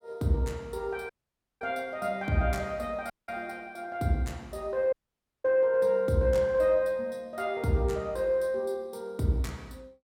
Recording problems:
dropout; at 1 s for 0.5 s, at 3 s and at 5 s for 0.5 s

